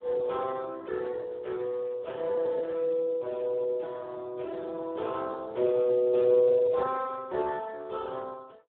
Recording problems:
telephone audio; 280 Hz to 2.7 kHz, Speex

